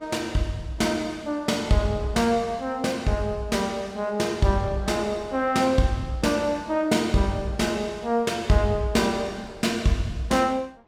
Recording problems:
wind on the microphone; below 800 Hz, SNR 23 dB

